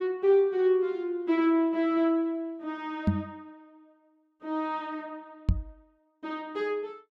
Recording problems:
microphone thump; at 3 s and at 5.5 s; peak +7 dB vs average level

